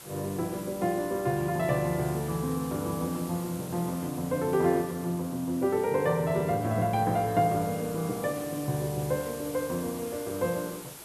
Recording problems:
background hiss; slope -3 dB per octave, SNR 14 dB

